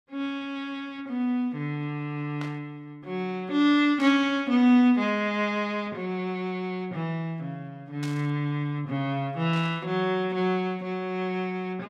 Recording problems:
burst of static; 4 times, first at 2.5 s; peak -10 dB vs average level

